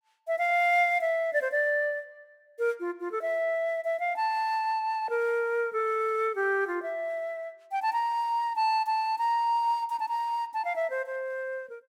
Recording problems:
none

